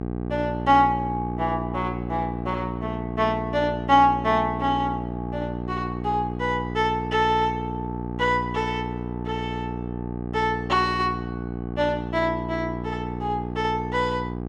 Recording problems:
hum; 60 Hz, harmonics up to 1.2 kHz, SNR 6 dB

